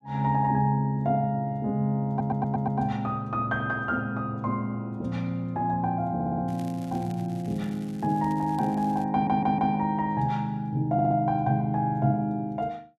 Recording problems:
stutter; 4 times, first at 2 s
crackling; from 6.5 to 9 s; loose cable, SNR 26 dB

